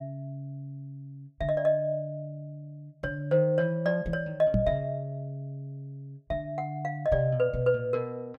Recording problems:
knock on the microphone; at 4.5 s; peak +6 dB vs average level

